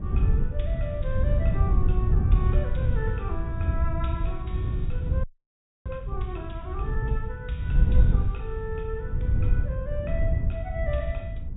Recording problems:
treble missing; nothing above 4 kHz
mains hum; 60 Hz, harmonics up to 480 Hz, SNR 17 dB
wind on the microphone; below 94 Hz, SNR -9 dB
audio freezing; at 5 s for 0.5 s

